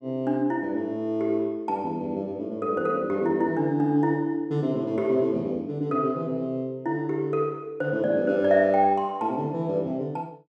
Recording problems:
none

